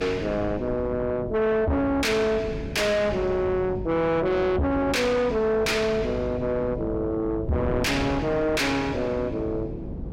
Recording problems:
distortion; soft clipping, signal-to-distortion ratio 6 dB
hum; 50 Hz, harmonics up to 400 Hz, SNR 14 dB
wind on the microphone; below 340 Hz, SNR 11 dB

